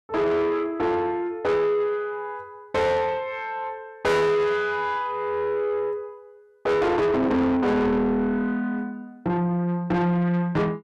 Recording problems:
distorted audio; soft clipping, signal-to-distortion ratio 7 dB

